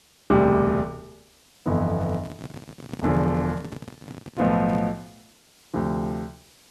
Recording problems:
background hiss; SNR 29 dB
microphone handling noise; from 2 to 5 s; peak -5 dB vs average level

